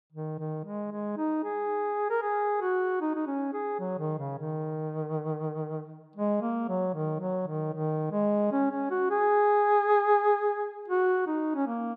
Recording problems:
none

